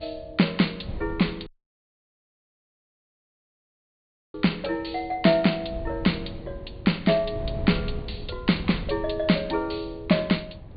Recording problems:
low-pass filter; nothing above 4.7 kHz
wind on the microphone; below 150 Hz, SNR 14 dB
dropout; at 1.5 s for 3 s

